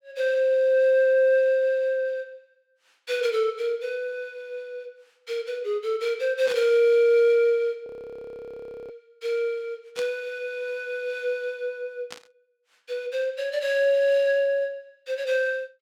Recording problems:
static burst; at 6.5 s, at 10 s and at 12 s; peak -9 dB vs average level
audio freezing; at 8 s for 1 s

